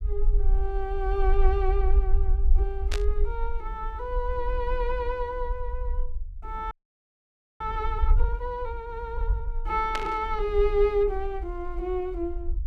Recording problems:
rumble; below 50 Hz, strongest tone 24 Hz, SNR 1 dB
burst of static; at 3 s and at 10 s; peak +2 dB vs average level
audio freezing; at 6.5 s for 1 s

